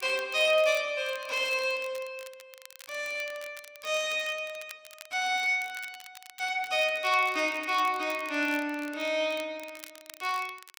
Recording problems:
crackling; vinyl, SNR 20 dB

